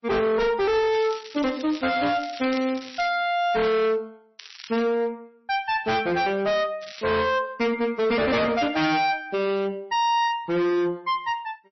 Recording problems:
lossy compression; MP3, log-spectral distance 5 dB, nothing above 5.7 kHz
distortion; hard clipping, signal-to-distortion ratio 6 dB
crackling; from 1 to 3 s, at 4.5 s and at 7 s; loose cable, SNR 17 dB

